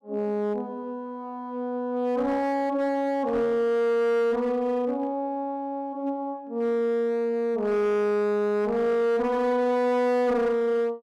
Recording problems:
distortion; hard clipping, signal-to-distortion ratio 11 dB

